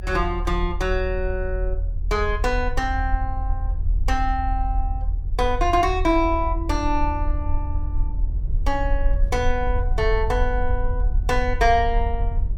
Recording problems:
rumble; below 58 Hz, SNR 2 dB

